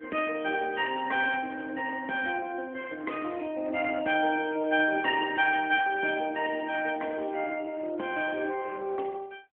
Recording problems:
telephone audio; 240 Hz to 3.3 kHz, AMR-NB

